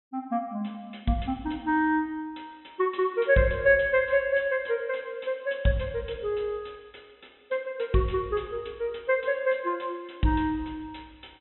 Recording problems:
treble missing; nothing above 3.9 kHz

